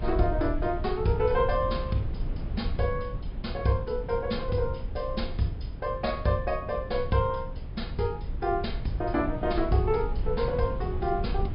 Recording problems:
treble missing; nothing above 5.2 kHz
codec artefacts; Vorbis, log-spectral distance 2 dB
rumble; below 94 Hz, SNR 6 dB

